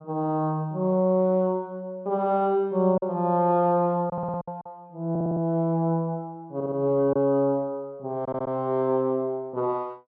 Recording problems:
packet loss; 2% of the sound replaced, filled with silence
stutter; 4 times, first at 4 s

